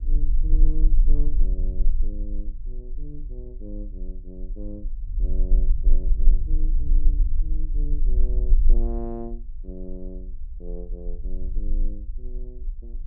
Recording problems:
rumble; below 36 Hz, strongest tone 20 Hz, SNR -14 dB

